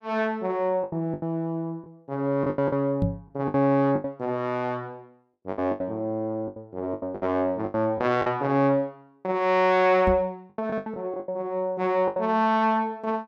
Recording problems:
lost packets; 11% of the sound replaced, filled with the last packet
knock on the microphone; at 3 s and at 10 s; peak +4 dB vs average level

